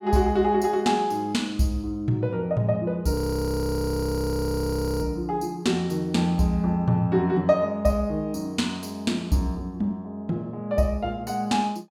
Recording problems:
audio freezing; at 3 s for 2 s

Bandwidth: 18 kHz